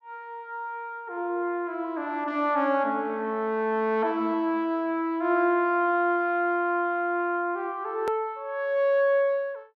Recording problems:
click at an edit; at 8 s

